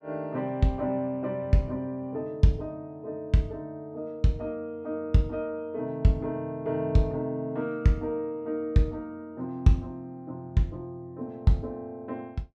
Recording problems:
none

